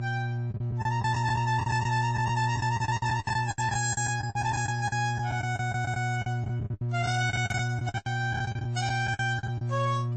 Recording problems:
lossy compression; MP3, then AAC, log-spectral distance 3 dB, nothing above 7.3 kHz
distortion; hard clipping, uneven, signal-to-distortion ratio 10 dB
electrical hum; 60 Hz, harmonics up to 600 Hz, SNR 1 dB
lost packets; 16% of the sound replaced, filled with the last packet

